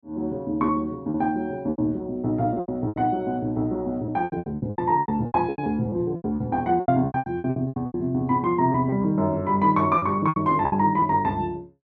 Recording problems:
packet loss; 16% of the sound replaced, filled with repeated pitch periods

